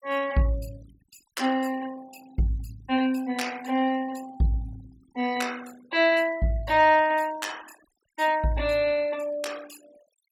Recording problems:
noise reduction artefacts; signal-to-artefact ratio 21 dB

